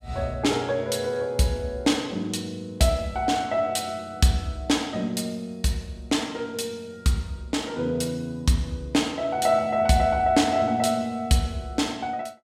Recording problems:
none

